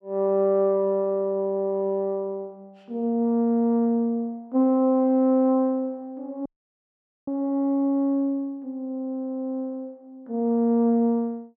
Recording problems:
audio cutting out; at 6.5 s for 1 s

